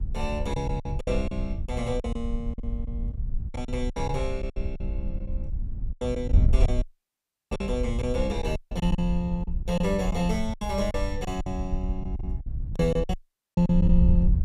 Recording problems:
wind noise; below 70 Hz, SNR 1 dB
packet loss; 12% of the sound replaced, filled with silence
dropout; at 7 s for 0.5 s, at 8.5 s and at 13 s

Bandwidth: 15.5 kHz